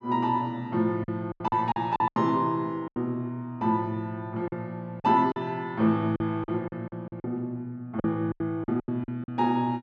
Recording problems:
lost packets; 11% of the sound replaced, filled with silence

